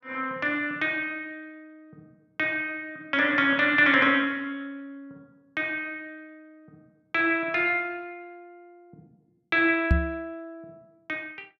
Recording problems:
microphone thump; at 10 s; peak +6 dB vs average level

